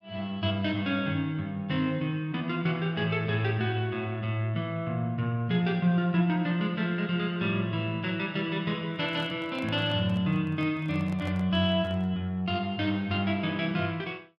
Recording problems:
microphone handling noise; from 9 to 12 s; peak -9 dB vs average level

